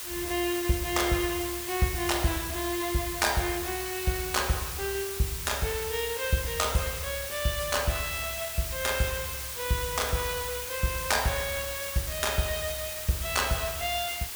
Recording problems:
hiss; slope +1 dB per octave, SNR 4 dB

